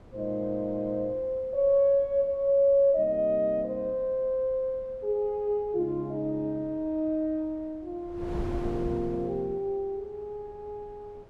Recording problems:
wind noise; below 370 Hz, SNR 18 dB

